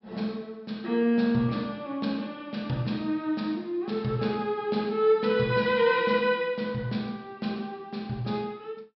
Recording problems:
treble cut off; nothing above 5.3 kHz

